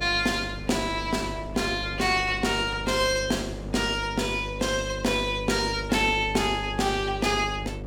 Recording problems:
electrical hum; 50 Hz, harmonics up to 600 Hz, SNR 11 dB
wind on the microphone; below 610 Hz, SNR 20 dB

